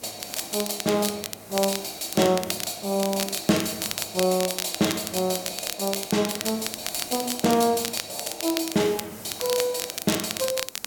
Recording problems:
background hiss; SNR 16 dB
crackling; vinyl, SNR 6 dB

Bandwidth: 17 kHz